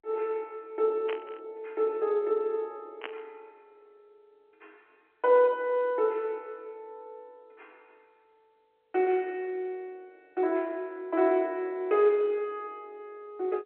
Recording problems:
phone line; 260 Hz to 3.4 kHz, G.711
static burst; at 1 s and at 3 s; peak -4 dB vs average level

